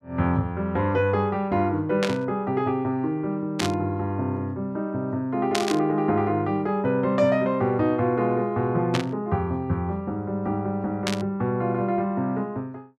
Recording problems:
static burst; 5 times, first at 2 s; peak +3 dB vs average level

